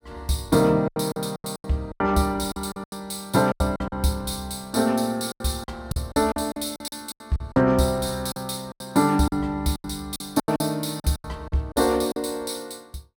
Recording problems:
lost packets; 14% of the sound replaced, filled with silence

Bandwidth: 17 kHz